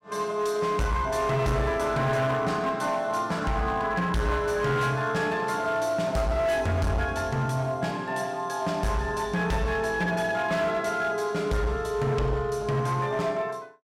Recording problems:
distorted audio; hard clipping, signal-to-distortion ratio 11 dB

